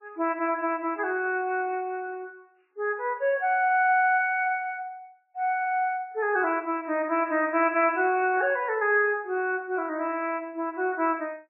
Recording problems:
lossy codec; MP3, log-spectral distance 2 dB, nothing above 2.2 kHz

